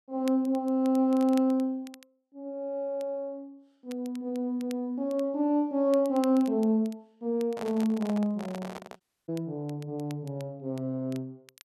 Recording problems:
crackling; vinyl, SNR 24 dB
handling noise; from 7.5 to 9 s; peak -5 dB vs average level
audio cutting out; at 9 s

